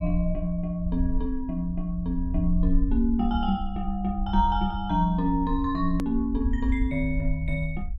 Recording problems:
low-frequency rumble; below 60 Hz, SNR 5 dB
edit click; at 6 s

